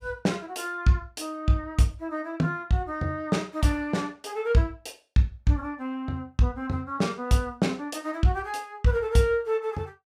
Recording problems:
none

